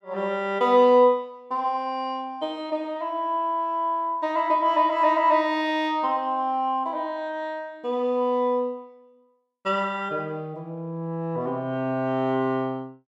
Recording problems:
none

